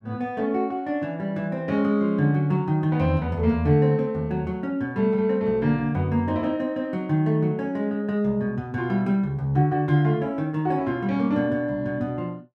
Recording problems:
none

